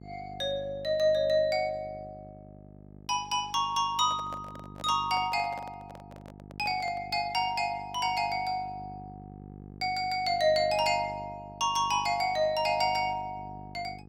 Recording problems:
electrical hum; 50 Hz, harmonics up to 850 Hz, SNR 19 dB
handling noise; from 4 to 7 s; peak -11 dB vs average level

